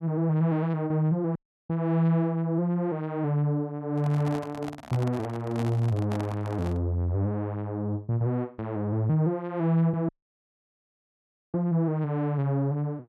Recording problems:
audio cutting out; at 1.5 s and at 10 s for 1.5 s
microphone handling noise; from 4 to 7 s; peak -5 dB vs average level

